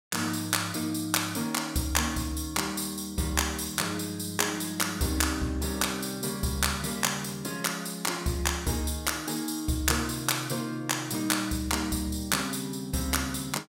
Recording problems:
none

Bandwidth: 16.5 kHz